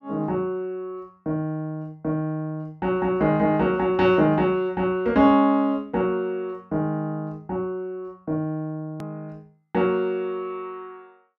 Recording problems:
click at an edit; at 9 s

